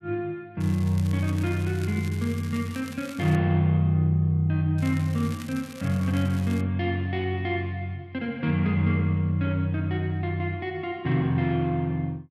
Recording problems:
crackle; from 0.5 to 3.5 s and from 5 to 6.5 s; loose cable, SNR 20 dB

